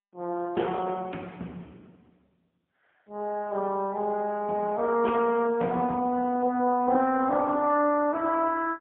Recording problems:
phone line; 190 Hz to 3.4 kHz, AMR-NB, then MP3

